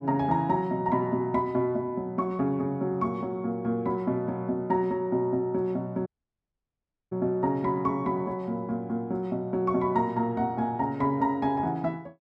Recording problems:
dropout; at 6 s for 1 s

